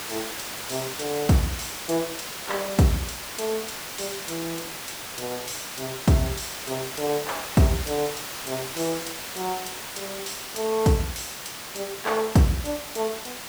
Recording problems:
background hiss; slope -1 dB per octave, SNR 6 dB

